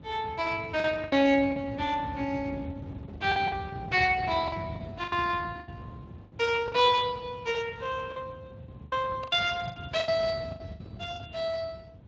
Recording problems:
lossy codec; Speex, log-spectral distance 3 dB
wind noise; below 230 Hz, SNR 14 dB
lost packets; 9% of the sound replaced, filled with the last packet

